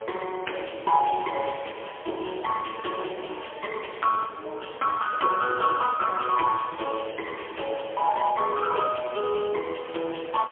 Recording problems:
telephone audio; 340 Hz to 3.1 kHz, AMR-NB, then MP3
hiss; SNR 29 dB

